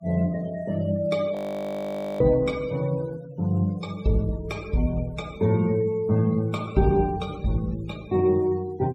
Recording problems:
denoising artefacts; signal-to-artefact ratio 23 dB
frozen audio; at 1.5 s for 1 s

